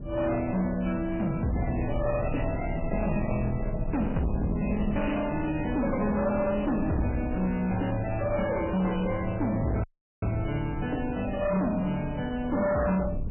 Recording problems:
lossy compression; MP3, log-spectral distance 6 dB, nothing above 2.7 kHz
distorted audio; soft clipping, signal-to-distortion ratio 8 dB
low-frequency rumble; below 170 Hz, SNR 8 dB
audio cutting out; at 10 s

